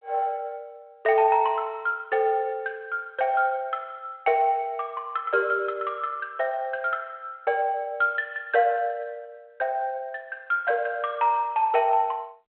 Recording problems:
phone line; 280 Hz to 3.5 kHz, G.726

